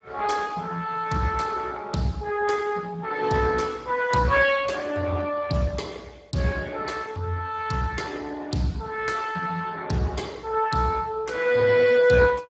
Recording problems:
codec artefacts; Speex, log-spectral distance 4 dB, nothing above 7.6 kHz

